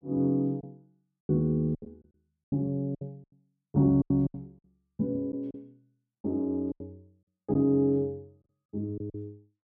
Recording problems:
packet loss; 10% of the sound replaced, filled with silence

